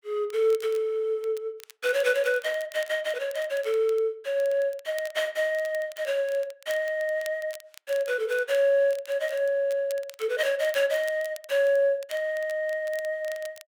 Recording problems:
crackling; vinyl, SNR 22 dB

